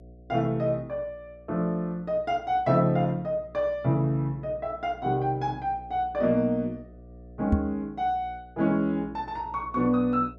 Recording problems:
hum; 60 Hz, harmonics up to 720 Hz, SNR 22 dB
knock on the microphone; at 7.5 s; peak +7 dB vs average level

